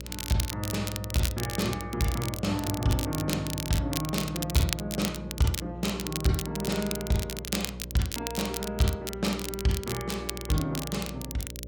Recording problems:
hum; 60 Hz, harmonics up to 600 Hz, SNR 11 dB
crackle; vinyl, SNR 6 dB

